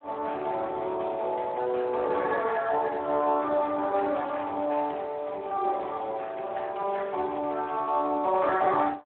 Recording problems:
telephone audio; 320 Hz to 2.9 kHz, Speex

